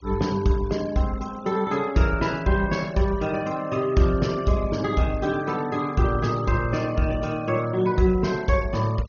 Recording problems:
treble missing; nothing above 6.5 kHz
denoising artefacts; signal-to-artefact ratio 20 dB

